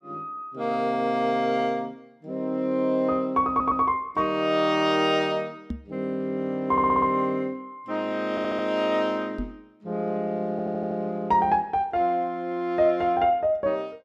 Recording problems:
stutter; 4 times, first at 3.5 s
microphone bump; at 5.5 s and at 9.5 s; peak -3 dB vs average level

